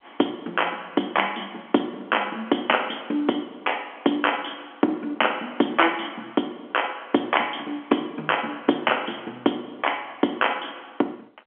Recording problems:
phone line; 260 Hz to 3.3 kHz, G.711

